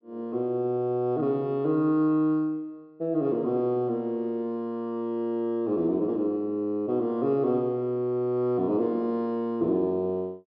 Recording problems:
low-pass filter; nothing above 5.5 kHz

